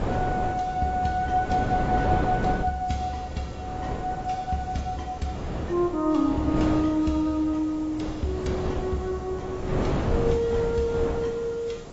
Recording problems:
codec artefacts; AAC, log-spectral distance 3 dB, nothing above 7.8 kHz
background hiss; slope +2 dB per octave, SNR 27 dB
wind on the microphone; below 560 Hz, SNR 5 dB

